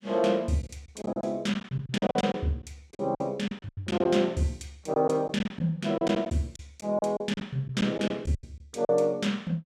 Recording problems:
packet loss; 13% of the sound replaced, filled with silence

